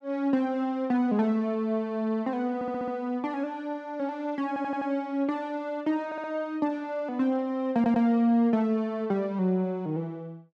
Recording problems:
stutter; 4 times, first at 2.5 s

